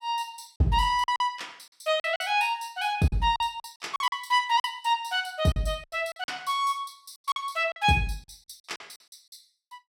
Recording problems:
lost packets; 10% of the sound replaced, filled with silence

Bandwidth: 17.5 kHz